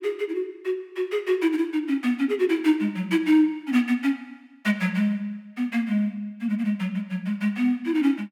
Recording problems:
none

